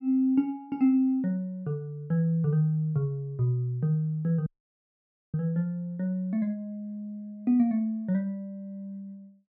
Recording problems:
dropout; at 4.5 s for 1 s

